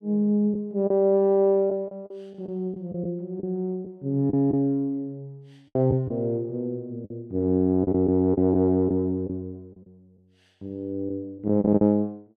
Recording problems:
packet loss; 6% of the sound replaced, filled with the last packet

